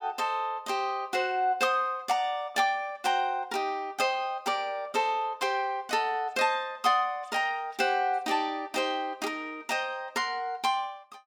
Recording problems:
none

